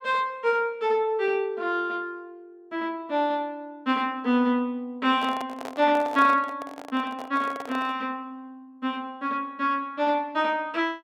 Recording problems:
handling noise; from 5 to 8 s; peak -6 dB vs average level

